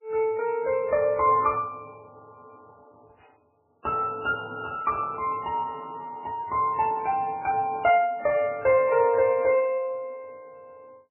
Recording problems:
codec artefacts; MP3, log-spectral distance 2 dB, nothing above 2.8 kHz

